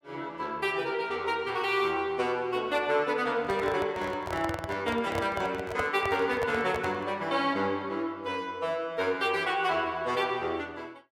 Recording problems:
handling noise; from 3.5 to 7 s; peak -1 dB vs average level

